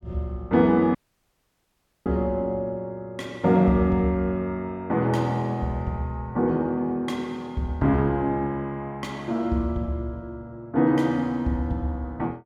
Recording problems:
dropout; at 1 s for 1 s

